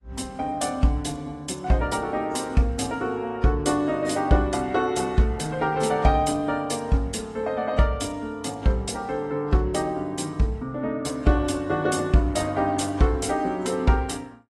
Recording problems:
lossy compression; AAC, log-spectral distance 2 dB

